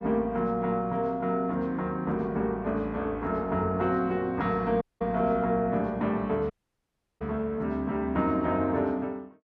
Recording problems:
audio cutting out; at 5 s and at 6.5 s for 0.5 s

